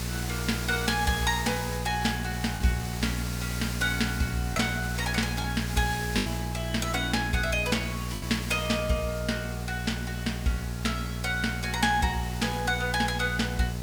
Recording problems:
electrical hum; 60 Hz, harmonics up to 1.1 kHz, SNR 5 dB
background hiss; slope 0 dB per octave, SNR 10 dB
packet loss; 1.6% of the sound replaced, filled with the last packet

